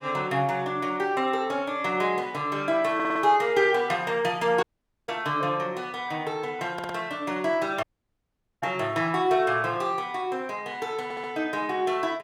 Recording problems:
stutter; at 3 s, at 6.5 s and at 11 s
dropout; at 4.5 s and at 8 s for 1 s

